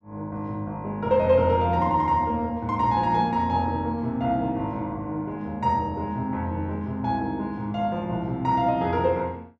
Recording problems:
none

